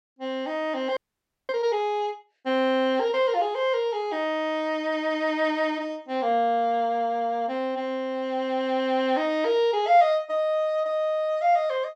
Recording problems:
audio freezing; at 1 s for 0.5 s

